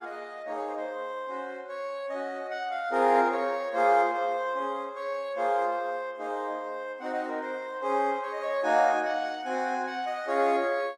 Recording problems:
lossy codec; Opus, log-spectral distance 2 dB, nothing above 15.1 kHz

